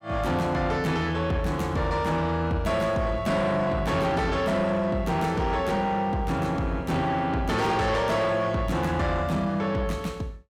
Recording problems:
distortion; soft clipping, signal-to-distortion ratio 10 dB

